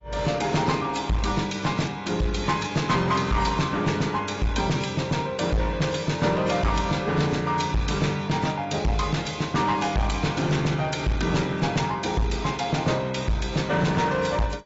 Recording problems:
treble missing; nothing above 7.3 kHz
lossy codec; AAC, log-spectral distance 3 dB
distortion; hard clipping, uneven, signal-to-distortion ratio 6 dB

